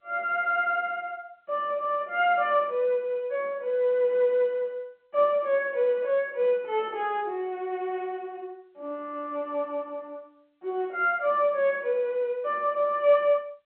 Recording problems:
phone line; 240 Hz to 3.3 kHz, G.711

